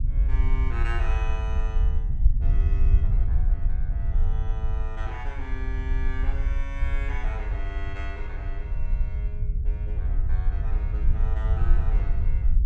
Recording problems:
rumble; below 58 Hz, SNR -13 dB

